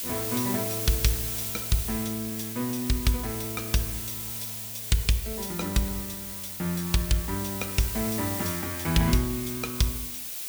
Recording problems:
hiss; SNR 3 dB

